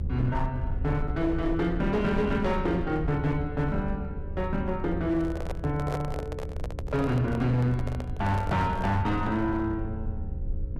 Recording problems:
distortion; hard clipping, signal-to-distortion ratio 12 dB
hum; 60 Hz, harmonics up to 540 Hz, SNR 16 dB
low-frequency rumble; below 78 Hz, SNR 8 dB
handling noise; from 5 to 9 s; peak -2 dB vs average level

